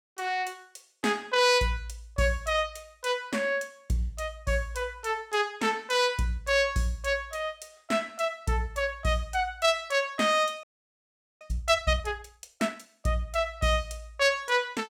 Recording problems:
audio freezing; at 11 s for 1 s

